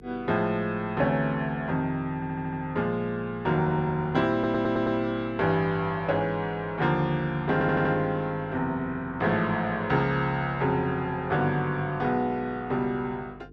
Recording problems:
electrical hum; 50 Hz, harmonics up to 450 Hz, SNR 22 dB
stutter; at 2 s, at 4.5 s and at 7.5 s

